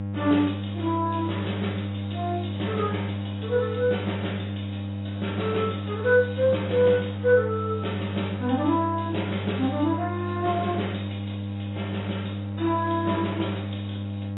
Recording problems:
lossy codec; AAC, log-spectral distance 6 dB, nothing above 3.9 kHz
hum; 50 Hz, harmonics up to 800 Hz, SNR 5 dB

